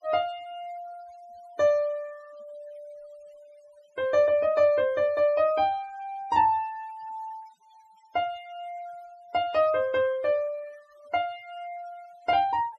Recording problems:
noise reduction artefacts; signal-to-artefact ratio 26 dB

